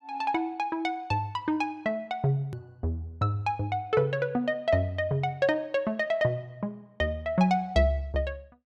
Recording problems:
hard cut with a click; at 2.5 s

